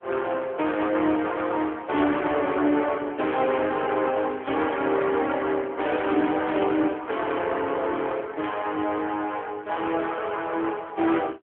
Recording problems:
telephone audio; 260 Hz to 3.4 kHz, AMR-NB
static burst; 4 times, first at 2 s; peak -9 dB vs average level

